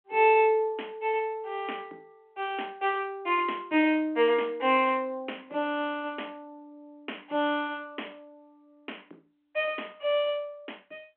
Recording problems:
phone line; 240 Hz to 3.3 kHz, G.726

